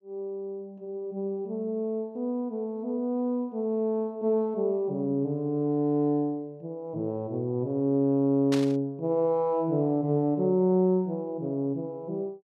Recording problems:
burst of static; at 8.5 s; peak -2 dB vs average level

